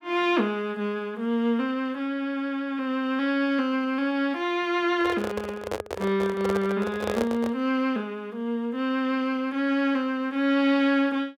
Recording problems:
microphone handling noise; from 5 to 7.5 s; peak +2 dB vs average level

